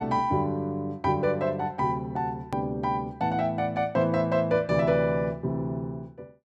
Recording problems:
hard cut with a click; at 2.5 s

